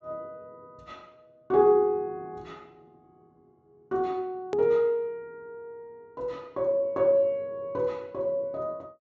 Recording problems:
treble missing; nothing above 8 kHz
hard cut with a click; at 4.5 s

